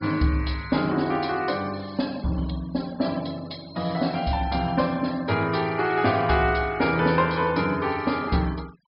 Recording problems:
treble cut off; nothing above 5.5 kHz
denoising artefacts; signal-to-artefact ratio 22 dB

